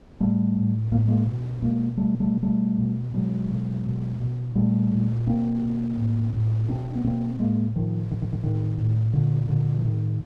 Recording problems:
wind on the microphone; below 430 Hz, SNR 20 dB
stutter; at 2 s and at 8 s

